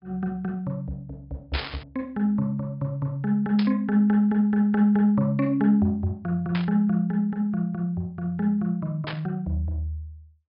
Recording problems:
low-pass filter; nothing above 5.5 kHz
burst of static; 4 times, first at 1.5 s; peak -2 dB vs average level

